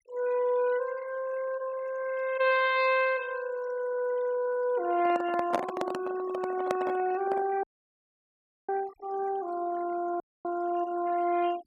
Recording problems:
noise reduction artefacts; signal-to-artefact ratio 17 dB
handling noise; from 5 to 7.5 s; peak +3 dB vs average level
audio cutting out; at 7.5 s for 1 s and at 10 s

